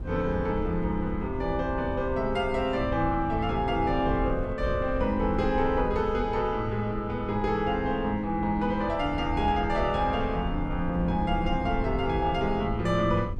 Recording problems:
wind on the microphone; below 94 Hz, SNR 8 dB

